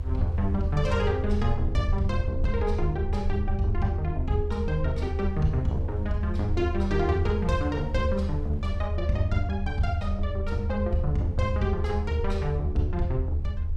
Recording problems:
rumble; below 78 Hz, SNR 1 dB
wind noise; below 510 Hz, SNR 24 dB

